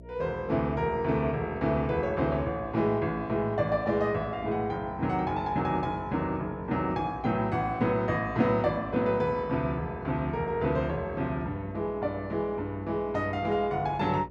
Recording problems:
hum; 60 Hz, harmonics up to 660 Hz, SNR 19 dB

